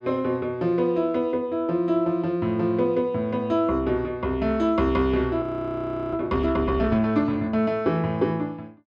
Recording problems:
audio freezing; at 5.5 s for 0.5 s

